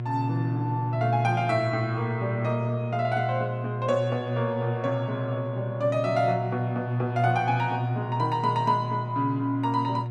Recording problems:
hum; 60 Hz, harmonics up to 720 Hz, SNR 3 dB

